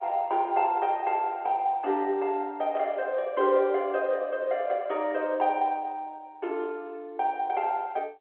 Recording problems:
phone line; 300 Hz to 3.5 kHz, G.711

